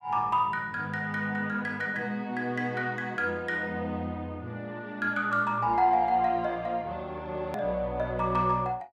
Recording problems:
edit click; at 7.5 s

